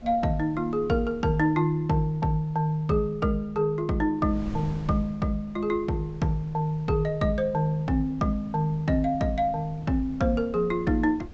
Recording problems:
low-pass filter; nothing above 8 kHz
wind on the microphone; below 170 Hz, SNR 19 dB

